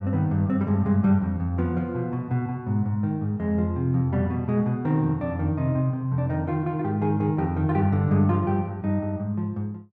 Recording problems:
none

